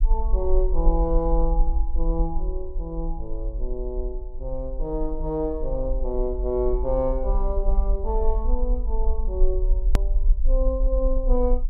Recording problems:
low-frequency rumble; below 44 Hz, strongest tone 26 Hz, SNR -2 dB
click at an edit; at 10 s

